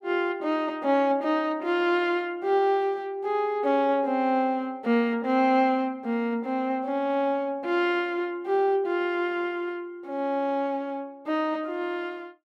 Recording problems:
none

